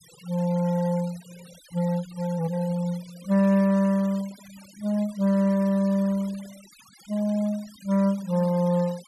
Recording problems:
noise reduction artefacts; signal-to-artefact ratio 22 dB

